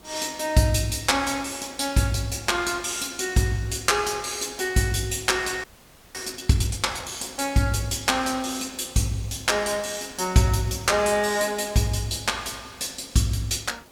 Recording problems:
background hiss; SNR 25 dB
frozen audio; at 5.5 s for 0.5 s

